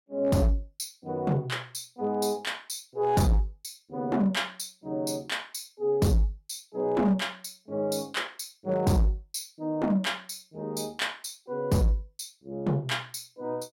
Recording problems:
distortion; hard clipping, signal-to-distortion ratio 11 dB

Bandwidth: 16.5 kHz